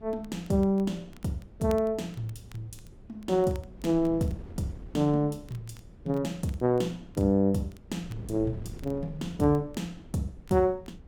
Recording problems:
wind noise; below 190 Hz, SNR 19 dB
crackle; vinyl, SNR 29 dB

